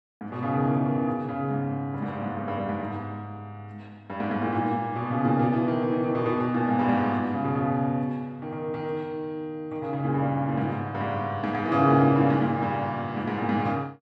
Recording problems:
none

